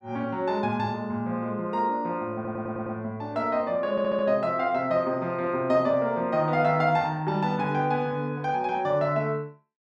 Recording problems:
audio stuttering; at 2.5 s and at 4 s

